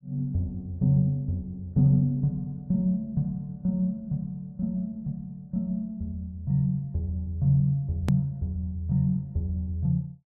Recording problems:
edit click; at 8 s

